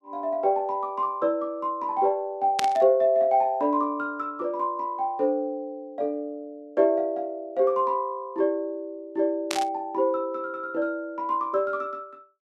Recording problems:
burst of static; at 2.5 s and at 9.5 s; peak +3 dB vs average level

